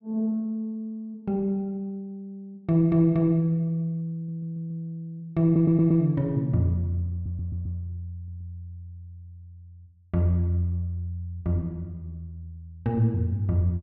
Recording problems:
stutter; 4 times, first at 4 s

